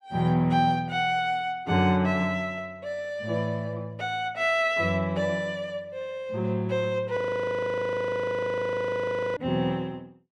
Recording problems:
audio freezing; at 7 s for 2 s

